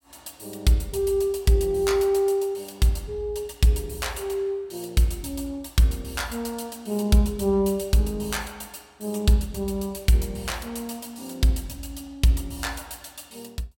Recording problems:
none

